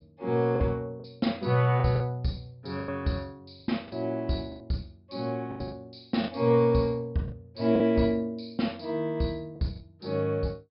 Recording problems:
treble missing; nothing above 5.5 kHz
packet loss; 7% of the sound replaced, filled with the last packet

